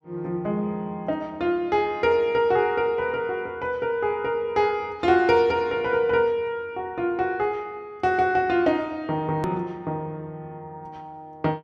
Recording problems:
click at an edit; at 9.5 s

